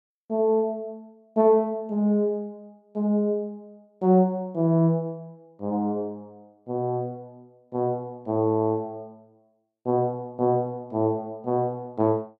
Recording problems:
none

